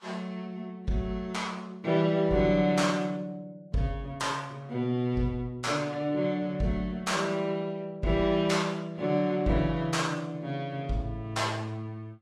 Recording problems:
codec artefacts; Vorbis, log-spectral distance 2 dB, nothing above 12 kHz

